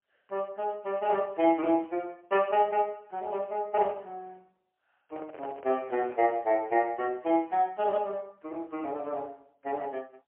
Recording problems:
phone line; 280 Hz to 3.1 kHz, AMR-NB, then MP3
handling noise; from 5 to 6.5 s; peak -12 dB vs average level

